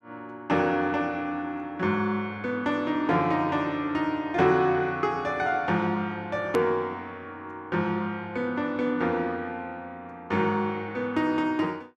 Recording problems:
hard cut with a click; at 6.5 s

